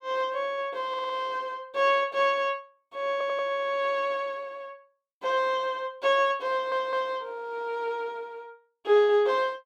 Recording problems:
audio stuttering; at 1 s, at 3 s and at 6.5 s

